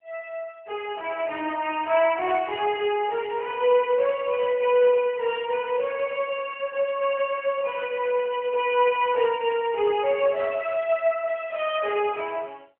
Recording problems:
phone line; 320 Hz to 3.1 kHz, AMR-NB

